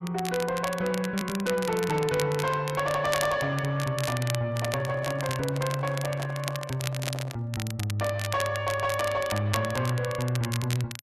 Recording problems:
distortion; soft clipping, signal-to-distortion ratio 12 dB
crackle; vinyl, SNR 9 dB
microphone handling noise; from 4.5 to 7.5 s; peak -5 dB vs average level

